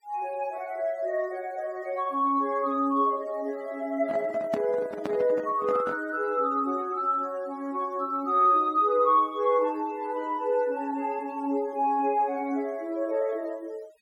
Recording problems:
noise reduction artefacts; signal-to-artefact ratio 28 dB
handling noise; from 4 to 6 s; peak -1 dB vs average level

